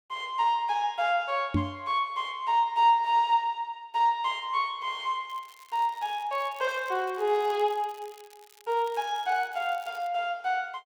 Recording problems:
microphone bump; at 1.5 s; peak +5 dB vs average level
crackle; from 5.5 to 10 s; loose cable, SNR 26 dB

